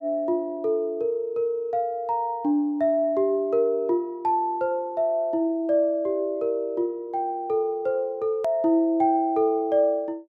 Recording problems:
edit click; at 8.5 s

